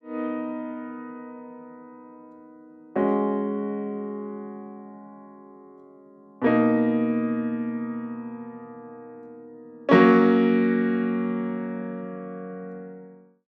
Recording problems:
none

